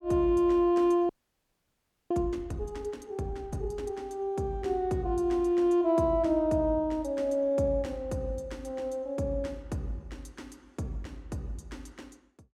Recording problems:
audio freezing; at 1 s for 1 s

